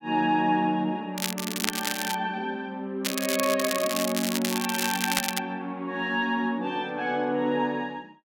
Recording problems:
crackling; from 1 to 2 s and from 3 to 5.5 s; loose cable, SNR 2 dB

